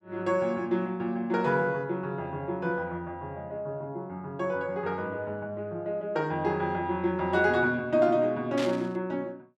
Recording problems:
burst of static; at 8.5 s; peak -3 dB vs average level

